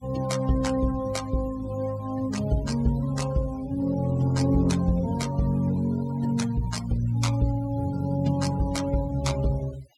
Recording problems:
denoising artefacts; signal-to-artefact ratio 17 dB

